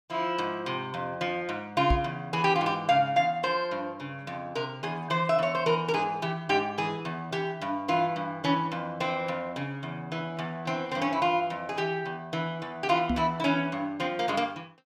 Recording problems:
knock on the microphone; at 2 s and at 13 s; peak +5 dB vs average level

